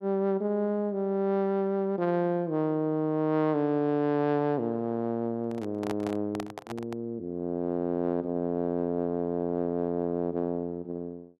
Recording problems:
microphone handling noise; from 5.5 to 7 s; peak -3 dB vs average level

